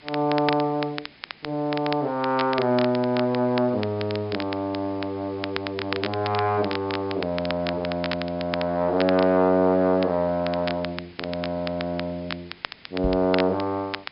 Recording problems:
low-pass filter; nothing above 5.5 kHz
background hiss; SNR 25 dB
crackle; vinyl, SNR 11 dB
knock on the microphone; at 13 s; peak -1 dB vs average level

